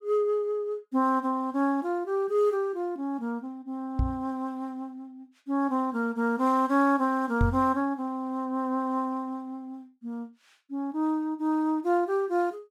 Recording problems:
microphone thump; at 4 s and at 7.5 s; peak +5 dB vs average level

